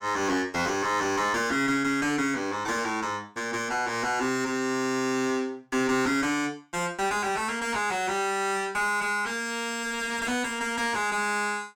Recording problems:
distortion; soft clipping, signal-to-distortion ratio 8 dB

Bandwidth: 17.5 kHz